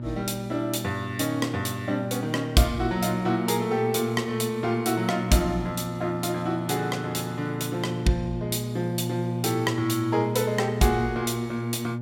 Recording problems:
hum; 60 Hz, harmonics up to 840 Hz, SNR 7 dB

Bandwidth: 16.5 kHz